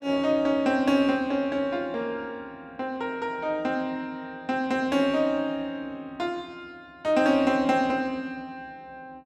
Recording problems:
none

